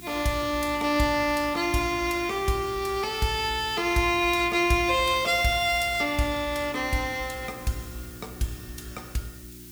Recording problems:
hum; 60 Hz, harmonics up to 360 Hz, SNR 21 dB
background hiss; SNR 20 dB

